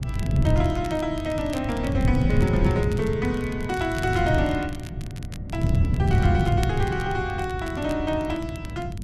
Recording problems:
wind noise; below 160 Hz, SNR 0 dB
crackle; vinyl, SNR 18 dB

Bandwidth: 12.5 kHz